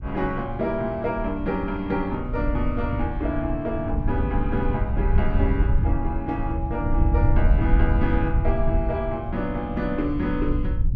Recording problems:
low-frequency rumble; below 84 Hz, SNR 0 dB

